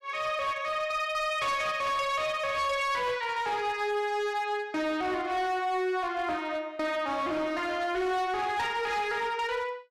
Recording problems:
distorted audio; hard clipping, signal-to-distortion ratio 10 dB

